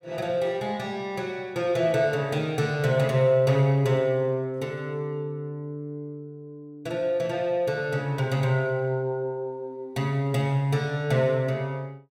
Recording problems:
none

